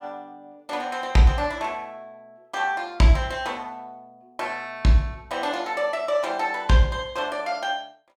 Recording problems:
none

